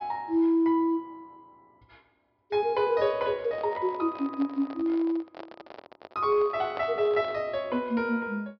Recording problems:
low-pass filter; nothing above 5.5 kHz
microphone handling noise; from 3.5 to 7.5 s; peak -6 dB vs average level

